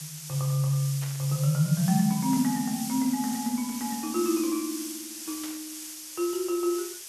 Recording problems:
background hiss; SNR 9 dB
static burst; at 1 s and at 5.5 s; peak -11 dB vs average level

